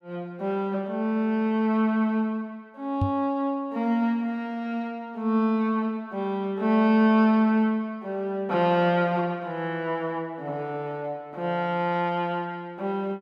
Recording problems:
microphone thump; at 3 s; peak +3 dB vs average level

